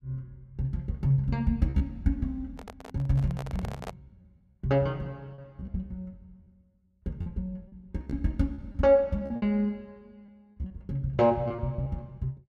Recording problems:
packet loss; 8% of the sound replaced, filled with repeated pitch periods
handling noise; from 2.5 to 4 s; peak -6 dB vs average level

